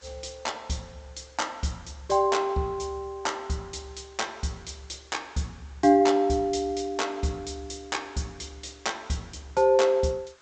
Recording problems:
low-pass filter; nothing above 8 kHz
background hiss; SNR 30 dB

